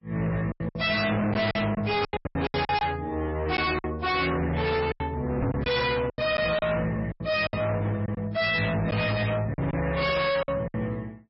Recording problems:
lossy compression; MP3, log-spectral distance 4 dB, nothing above 5.5 kHz
distorted audio; hard clipping, uneven, signal-to-distortion ratio 5 dB
packet loss; 11% of the sound replaced, filled with silence
knock on the microphone; at 5.5 s; peak +3 dB vs average level

